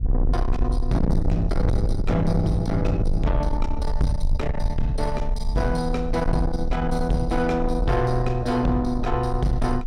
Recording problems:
distortion; soft clipping, signal-to-distortion ratio 7 dB
low-frequency rumble; below 64 Hz, SNR 4 dB

